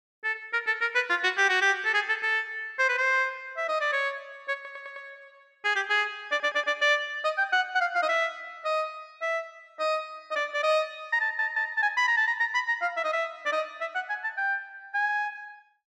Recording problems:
audio stuttering; at 4.5 s, at 6.5 s and at 11 s

